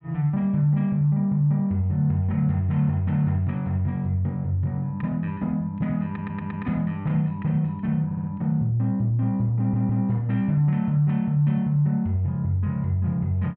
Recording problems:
stutter; at 6 s, at 8 s and at 9.5 s

